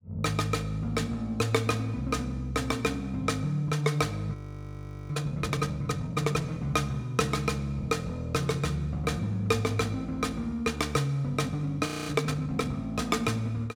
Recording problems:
frozen audio; at 4.5 s for 1 s and at 12 s

